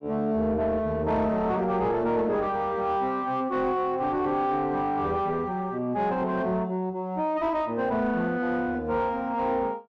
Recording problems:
distorted audio; soft clipping, signal-to-distortion ratio 11 dB

